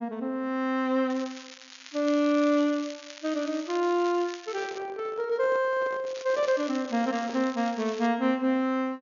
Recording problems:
low-pass filter; nothing above 7 kHz
crackling; from 1 to 5 s and from 6 to 8 s; loose cable, SNR 17 dB
handling noise; from 4.5 to 7.5 s; peak -10 dB vs average level

